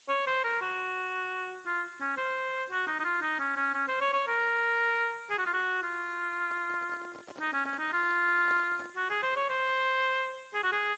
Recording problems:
lossy compression; MP3, then Speex, log-spectral distance 5 dB
hiss; slope +3 dB per octave, SNR 29 dB
handling noise; from 6.5 to 9 s; peak -9 dB vs average level

